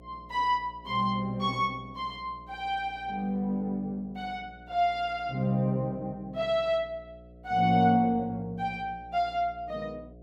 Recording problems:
hum; 60 Hz, harmonics up to 720 Hz, SNR 22 dB

